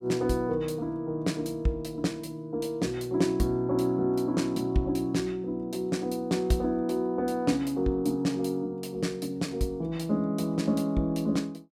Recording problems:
none

